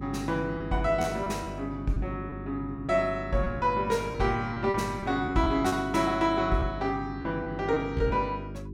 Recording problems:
hum; 50 Hz, harmonics up to 400 Hz, SNR 11 dB
lost packets; 6% of the sound replaced, filled with repeated pitch periods

